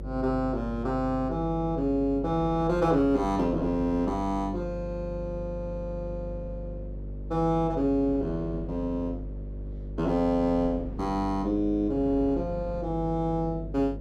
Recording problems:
electrical hum; 50 Hz, harmonics up to 600 Hz, SNR 10 dB
wind noise; below 360 Hz, SNR 20 dB

